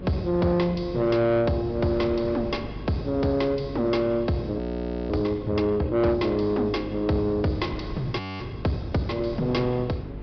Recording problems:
treble cut off; nothing above 5.5 kHz
distorted audio; soft clipping, signal-to-distortion ratio 11 dB
electrical hum; 50 Hz, harmonics up to 450 Hz, SNR 15 dB
wind on the microphone; below 380 Hz, SNR 17 dB
frozen audio; at 4.5 s for 0.5 s and at 8 s

